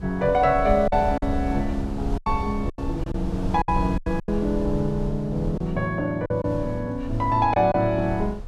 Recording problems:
wind noise; below 98 Hz, SNR 9 dB
packet loss; 7% of the sound replaced, filled with silence

